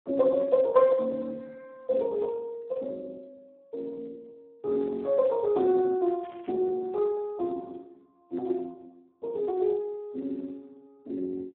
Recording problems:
telephone audio; 240 Hz to 2.1 kHz, Speex
crackle; at 6 s; loose cable, SNR 27 dB

